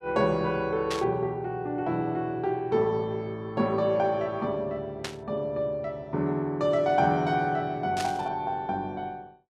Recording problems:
static burst; at 1 s, at 5 s and at 8 s; peak -1 dB vs average level

